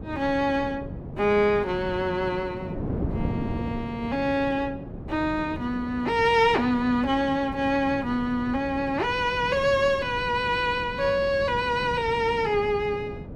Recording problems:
wind on the microphone; below 320 Hz, SNR 11 dB

